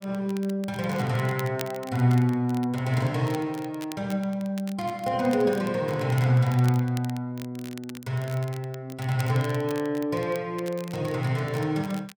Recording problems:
crackle; vinyl, SNR 19 dB

